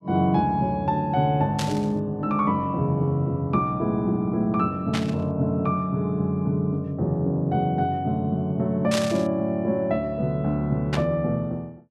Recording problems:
static burst; 4 times, first at 1.5 s; peak 0 dB vs average level

